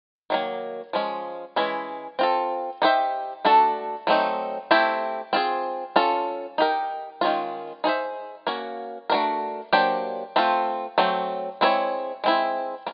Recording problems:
treble cut off; nothing above 5 kHz

